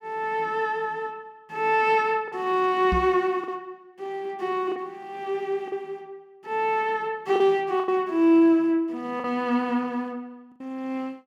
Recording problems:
lost packets; 3% of the sound replaced, filled with the last packet
knock on the microphone; at 3 s; peak 0 dB vs average level

